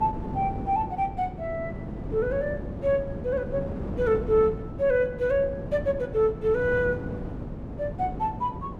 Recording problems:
hum; 50 Hz, harmonics up to 600 Hz, SNR 18 dB
wind on the microphone; below 350 Hz, SNR 9 dB

